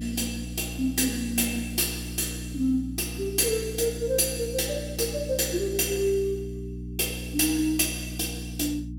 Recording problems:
hum; 60 Hz, harmonics up to 300 Hz, SNR 10 dB

